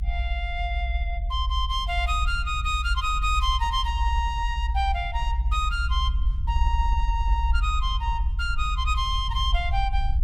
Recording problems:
rumble; below 62 Hz, SNR 0 dB

